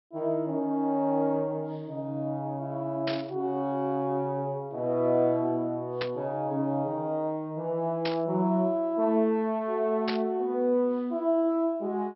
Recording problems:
treble cut off; nothing above 5.5 kHz
static burst; 4 times, first at 3 s; peak 0 dB vs average level

